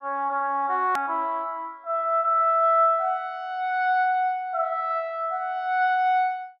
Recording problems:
hard cut with a click; at 1 s

